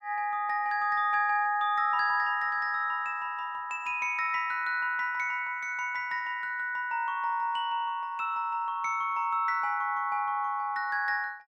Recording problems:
none

